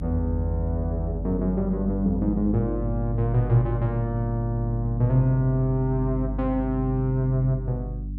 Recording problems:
hum; 50 Hz, harmonics up to 300 Hz, SNR 7 dB

